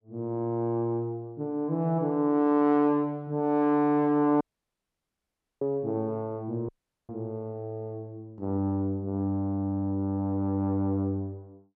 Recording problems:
dropout; at 4.5 s for 1 s and at 6.5 s

